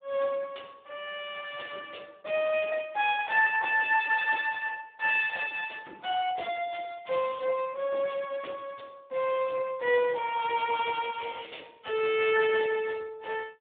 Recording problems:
phone line; 300 Hz to 3.5 kHz, Speex

